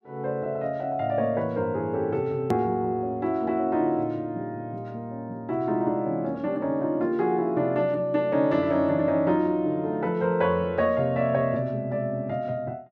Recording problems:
hard cut with a click; at 2.5 s

